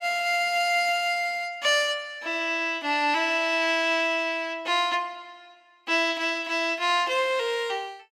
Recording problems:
none

